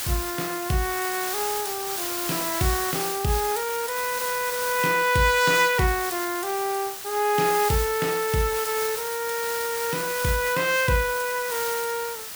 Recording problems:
background hiss; slope +1 dB per octave, SNR 5 dB

